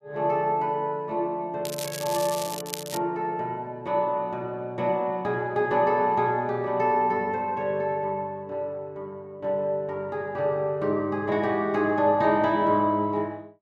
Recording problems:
crackling; from 1.5 to 3 s; loose cable, SNR 9 dB

